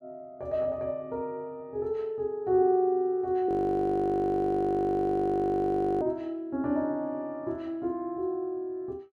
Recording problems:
frozen audio; at 3.5 s for 2.5 s

